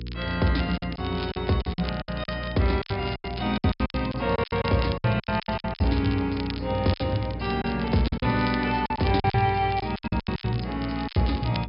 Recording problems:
treble missing; nothing above 5.5 kHz
electrical hum; 60 Hz, harmonics up to 480 Hz, SNR 10 dB
crackle; vinyl, SNR 16 dB
lost packets; 16% of the sound replaced, filled with silence

